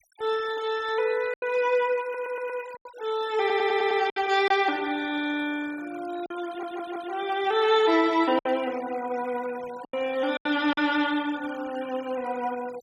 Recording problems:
denoising artefacts; signal-to-artefact ratio 19 dB
lost packets; 5% of the sound replaced, filled with silence
audio stuttering; at 2 s, at 3.5 s and at 6.5 s

